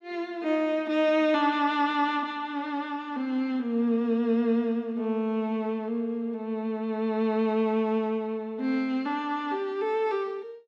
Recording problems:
none

